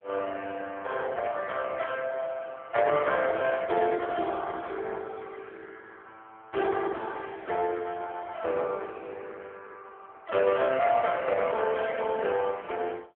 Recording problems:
phone line; 320 Hz to 3.4 kHz, AMR-NB

